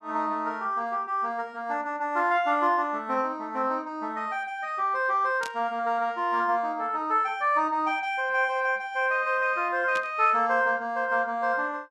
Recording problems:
static burst; at 5.5 s and at 10 s; peak -7 dB vs average level

